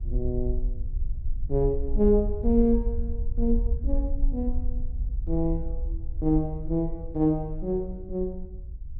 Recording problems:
low-frequency rumble; below 52 Hz, SNR 5 dB

